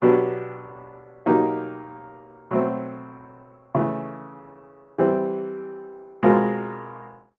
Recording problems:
lossy compression; Opus, log-spectral distance 2 dB

